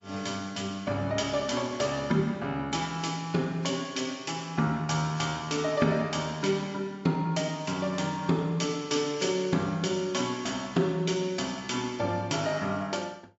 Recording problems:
treble cut off; nothing above 7.6 kHz
lossy codec; MP3, log-spectral distance 3 dB

